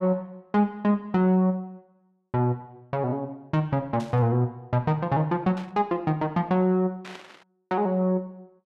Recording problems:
burst of static; at 4 s, at 5.5 s and at 7 s; peak -12 dB vs average level

